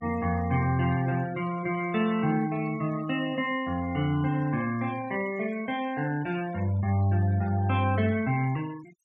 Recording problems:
denoising artefacts; signal-to-artefact ratio 20 dB

